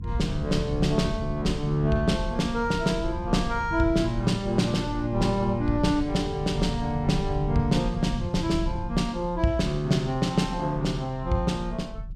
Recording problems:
low-frequency rumble; below 130 Hz, SNR 9 dB

